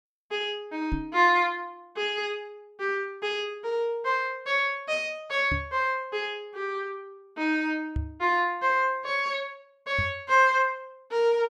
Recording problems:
knock on the microphone; 4 times, first at 1 s; peak -1 dB vs average level

